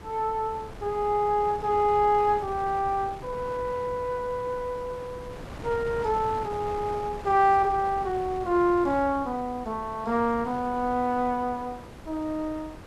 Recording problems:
background hiss; slope -6 dB per octave, SNR 24 dB
wind noise; below 810 Hz, SNR 16 dB

